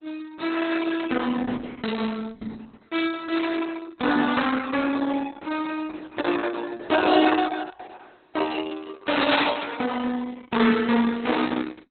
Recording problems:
codec artefacts; Opus, log-spectral distance 5 dB, nothing above 4.1 kHz

